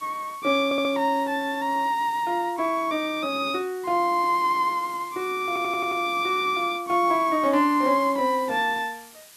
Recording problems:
hiss; slope +1 dB per octave, SNR 23 dB
stutter; at 0.5 s and at 5.5 s

